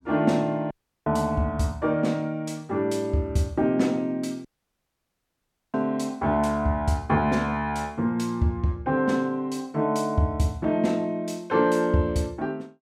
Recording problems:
audio cutting out; at 0.5 s and at 4.5 s for 1.5 s

